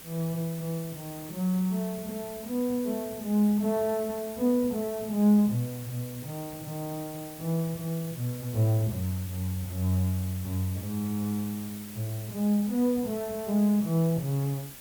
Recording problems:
background hiss; slope -1 dB per octave, SNR 14 dB

